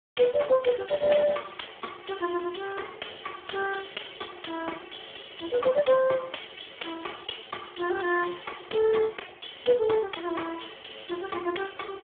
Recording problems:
telephone audio; 240 Hz to 2.2 kHz, Speex

